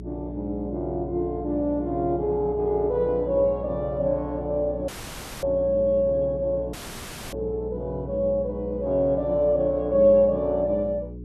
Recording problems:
electrical hum; 60 Hz, harmonics up to 420 Hz, SNR 13 dB
audio cutting out; at 5 s for 0.5 s and at 6.5 s for 0.5 s

